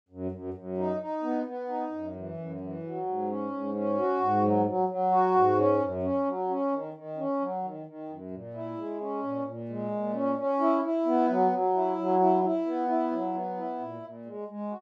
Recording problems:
none

